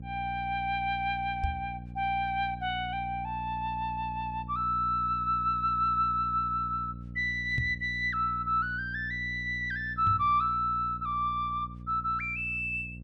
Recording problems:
electrical hum; 60 Hz, harmonics up to 540 Hz, SNR 13 dB
microphone thump; at 1.5 s, at 7.5 s and at 10 s; peak +1 dB vs average level

